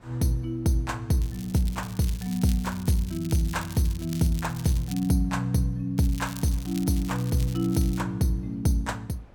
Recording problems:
wind on the microphone; below 630 Hz, SNR 28 dB
crackle; from 1 to 5 s and from 6 to 8 s; loose cable, SNR 17 dB

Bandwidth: 18 kHz